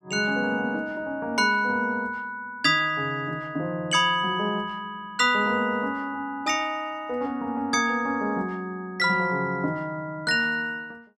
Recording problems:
none

